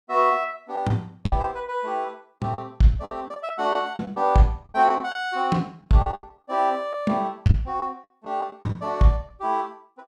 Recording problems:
lost packets; 9% of the sound replaced, filled with the last packet

